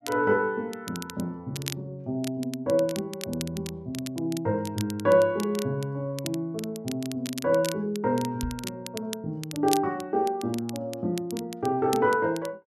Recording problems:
crackling; vinyl, SNR 12 dB
microphone thump; at 8.5 s; peak -3 dB vs average level

